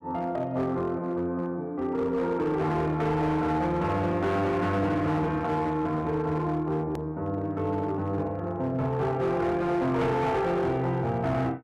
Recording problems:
distorted audio; hard clipping, signal-to-distortion ratio 11 dB
click at an edit; at 7 s

